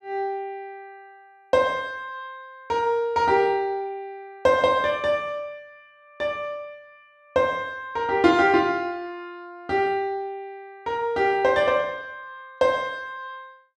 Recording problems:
none

